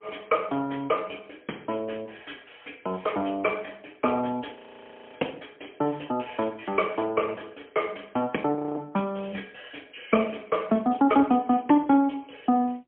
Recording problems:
telephone audio; 240 Hz to 3.2 kHz, AMR-NB, then MP3
audio freezing; at 4.5 s for 0.5 s and at 8.5 s

